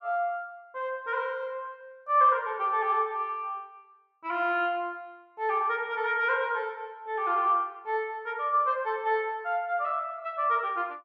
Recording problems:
none

